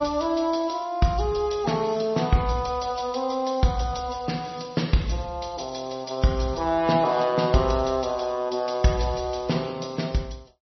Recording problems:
lossy codec; MP3, log-spectral distance 6 dB, nothing above 5.8 kHz

